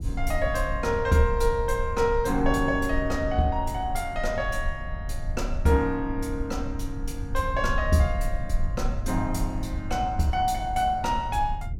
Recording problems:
rumble; below 66 Hz, SNR 7 dB

